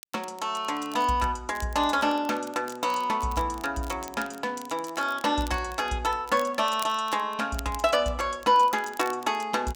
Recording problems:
crackle; vinyl, SNR 20 dB

